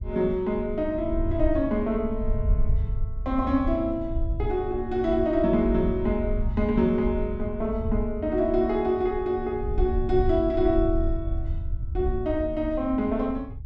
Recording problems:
low-frequency rumble; below 76 Hz, SNR 6 dB

